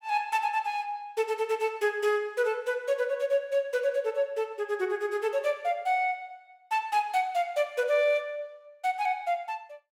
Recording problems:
none

